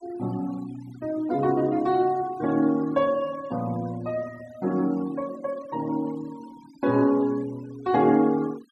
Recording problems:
noise reduction artefacts; signal-to-artefact ratio 23 dB

